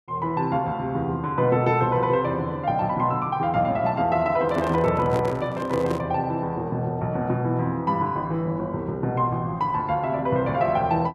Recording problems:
handling noise; from 4.5 to 6 s; peak -3 dB vs average level

